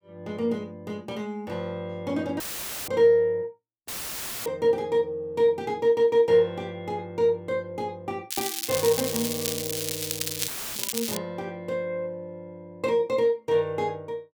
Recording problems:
dropout; at 2.5 s, at 4 s for 0.5 s and at 10 s; filled with static
crackling; from 8.5 to 11 s; loose cable, SNR 3 dB

